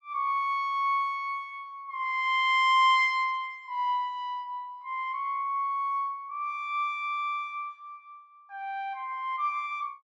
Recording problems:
none

